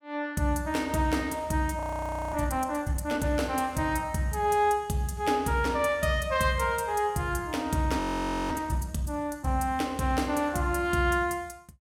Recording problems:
frozen audio; at 2 s for 0.5 s and at 8 s for 0.5 s

